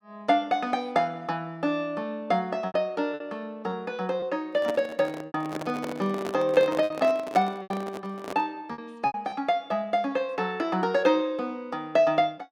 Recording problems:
packet loss; 5% of the sound replaced, filled with repeated pitch periods
microphone handling noise; from 4.5 to 8.5 s; peak -1 dB vs average level

